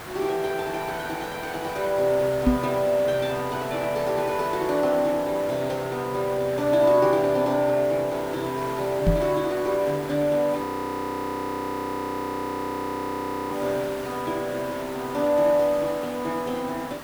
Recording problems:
hiss; SNR 12 dB
microphone thump; at 2.5 s and at 9 s; peak +7 dB vs average level
audio freezing; at 11 s for 3 s

